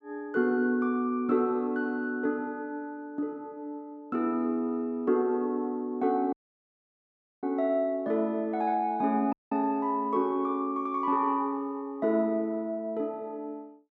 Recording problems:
audio cutting out; at 6.5 s for 1 s and at 9.5 s

